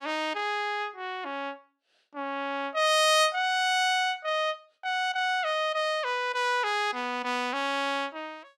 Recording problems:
none

